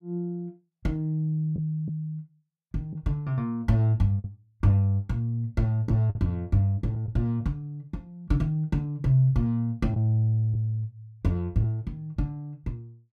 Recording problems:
packet loss; 2% of the sound replaced, filled with the last packet

